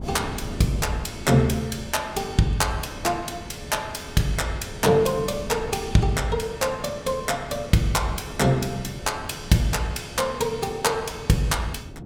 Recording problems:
wind noise; below 260 Hz, SNR 15 dB

